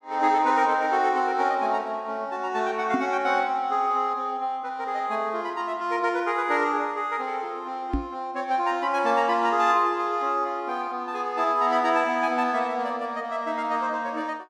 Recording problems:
microphone bump; at 3 s and at 8 s; peak +2 dB vs average level

